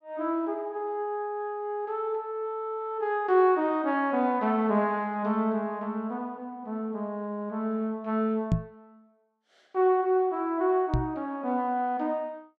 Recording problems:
knock on the microphone; at 8.5 s and at 11 s; peak +7 dB vs average level

